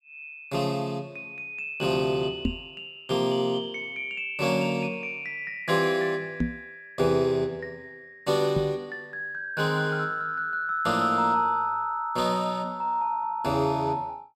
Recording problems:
knock on the microphone; at 2.5 s, at 6.5 s and at 8.5 s; peak +4 dB vs average level

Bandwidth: 16.5 kHz